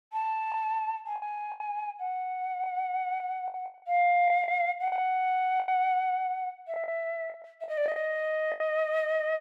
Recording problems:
lost packets; 9% of the sound replaced, filled with the last packet

